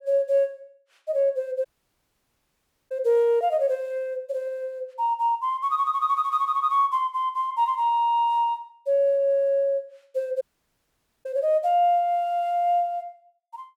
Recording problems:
dropout; at 1.5 s for 1.5 s and at 10 s for 1 s

